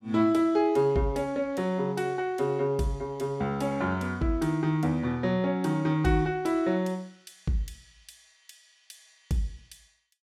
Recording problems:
none

